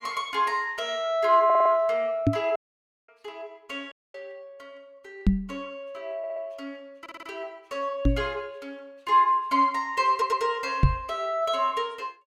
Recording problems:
audio stuttering; 4 times, first at 1.5 s
microphone thump; 4 times, first at 2.5 s; peak +9 dB vs average level
dropout; at 2.5 s for 0.5 s and at 4 s

